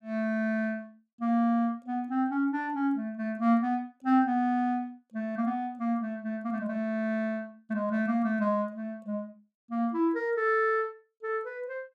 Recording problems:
none

